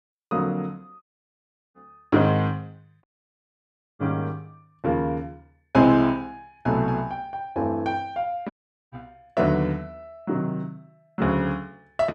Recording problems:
dropout; at 1 s for 0.5 s, at 3 s for 1 s and at 8.5 s

